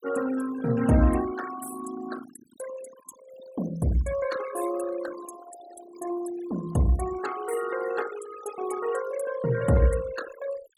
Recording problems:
denoising artefacts; signal-to-artefact ratio 13 dB

